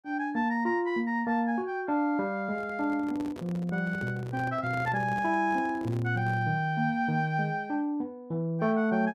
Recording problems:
handling noise; from 2.5 to 6.5 s; peak -9 dB vs average level

